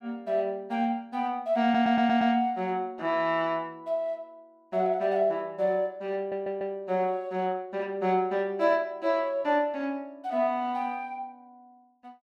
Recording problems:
stutter; at 1.5 s and at 6 s

